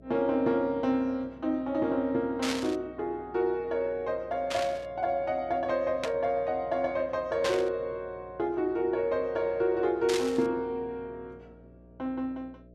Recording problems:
hum; 60 Hz, harmonics up to 660 Hz, SNR 24 dB
burst of static; 5 times, first at 2.5 s; peak 0 dB vs average level

